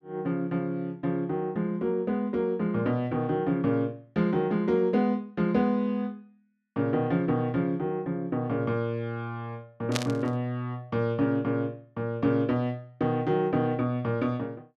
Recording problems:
burst of static; at 10 s; peak +3 dB vs average level

